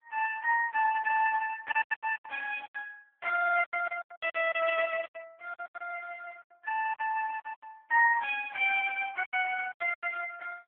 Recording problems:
phone line; 450 Hz to 3 kHz, AMR-NB
packet loss; 13% of the sound replaced, filled with silence

